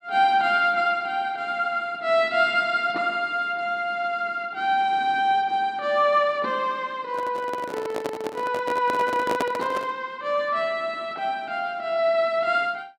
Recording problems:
microphone handling noise; from 7 to 10 s; peak +2 dB vs average level

